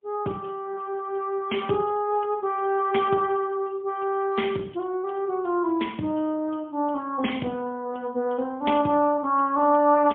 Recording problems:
phone line; 150 Hz to 3.3 kHz, AMR-NB, then MP3

